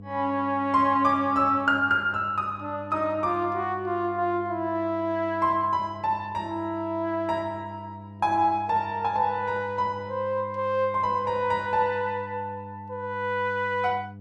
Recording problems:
hum; 50 Hz, harmonics up to 700 Hz, SNR 17 dB

